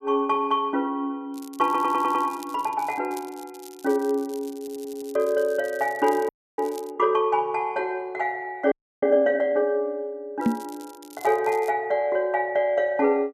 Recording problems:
crackle; from 1.5 to 7 s and from 10 to 12 s; loose cable, SNR 22 dB
stutter; at 1.5 s and at 4.5 s
frozen audio; at 6.5 s and at 8.5 s
knock on the microphone; at 10 s; peak +6 dB vs average level

